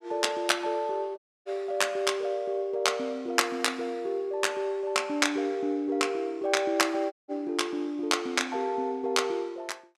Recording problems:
dropout; at 1 s and at 7 s

